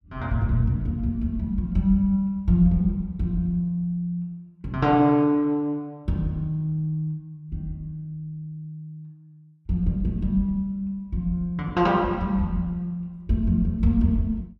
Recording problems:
none

